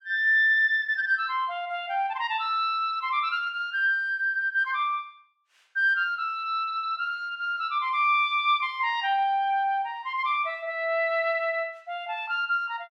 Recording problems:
none

